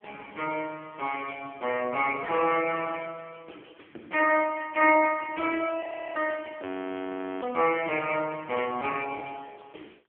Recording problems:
phone line; 260 Hz to 3.2 kHz, AMR-NB
audio freezing; at 6 s and at 6.5 s for 1 s

